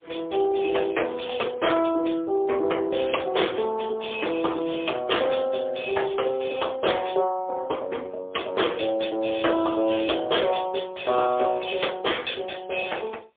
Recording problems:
phone line; 280 Hz to 3.5 kHz, AMR-NB, then MP3

